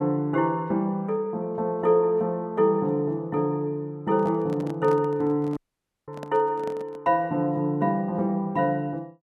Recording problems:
microphone handling noise; from 4 to 7 s; peak -10 dB vs average level
audio cutting out; at 5.5 s for 0.5 s

